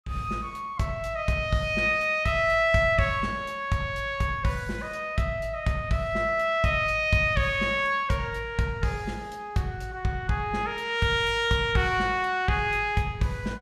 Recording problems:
none

